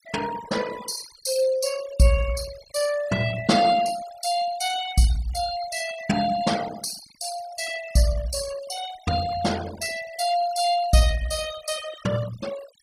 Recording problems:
denoising artefacts; signal-to-artefact ratio 13 dB

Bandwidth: 15.5 kHz